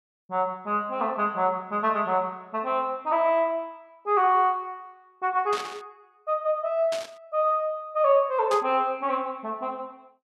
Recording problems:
burst of static; at 5.5 s, at 7 s and at 8.5 s; peak -6 dB vs average level

